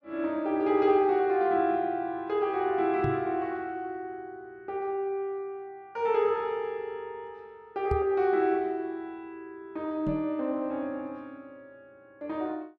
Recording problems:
microphone bump; at 3 s, at 8 s and at 10 s; peak 0 dB vs average level

